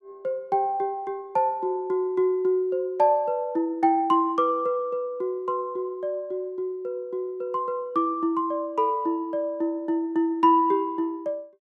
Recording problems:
none

